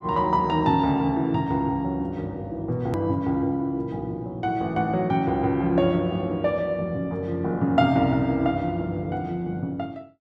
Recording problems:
edit click; at 3 s

